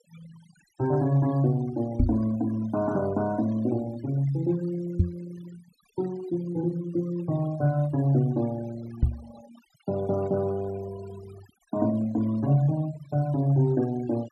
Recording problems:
noise reduction artefacts; signal-to-artefact ratio 19 dB
microphone bump; at 2 s, at 5 s and at 9 s; peak +8 dB vs average level

